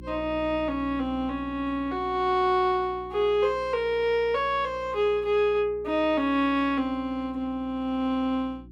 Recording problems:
hum; 60 Hz, harmonics up to 360 Hz, SNR 20 dB

